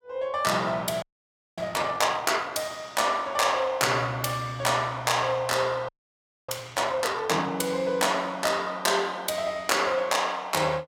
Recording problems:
frozen audio; at 1 s for 0.5 s and at 6 s for 0.5 s

